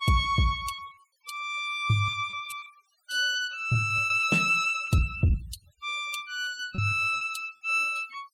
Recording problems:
noise reduction artefacts; signal-to-artefact ratio 21 dB
packet loss; 8% of the sound replaced, filled with repeated pitch periods

